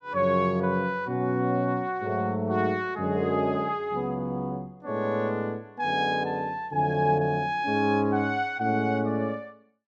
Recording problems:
none

